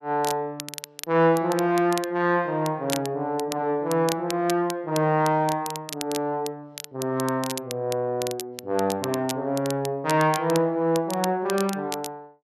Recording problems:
crackle; vinyl, SNR 12 dB

